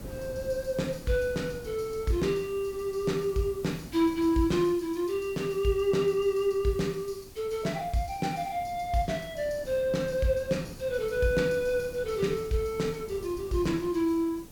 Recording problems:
hiss; slope +3 dB per octave, SNR 23 dB
wind on the microphone; below 320 Hz, SNR 18 dB

